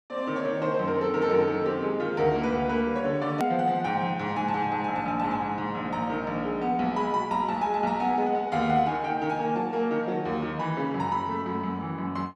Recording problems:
click at an edit; at 3.5 s

